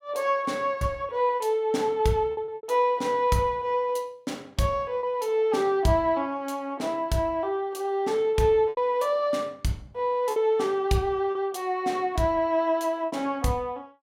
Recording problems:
lost packets; 4% of the sound replaced, filled with repeated pitch periods

